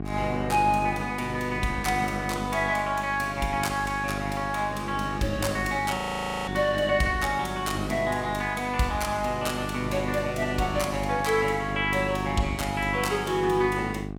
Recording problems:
mains hum; 50 Hz, harmonics up to 850 Hz, SNR 8 dB
audio freezing; at 6 s for 0.5 s

